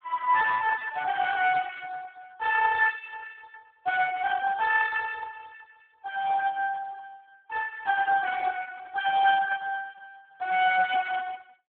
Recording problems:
telephone audio; 990 Hz to 2 kHz, Speex

